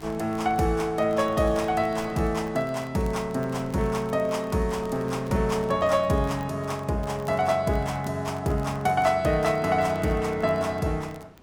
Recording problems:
wind on the microphone; below 790 Hz, SNR 21 dB
crackle; vinyl, SNR 29 dB

